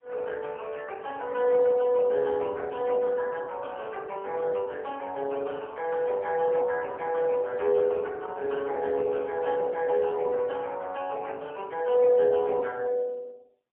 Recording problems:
phone line; 300 Hz to 3.2 kHz, AMR-NB, then MP3

